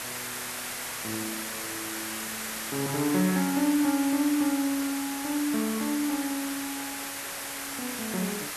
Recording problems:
hiss; SNR 4 dB

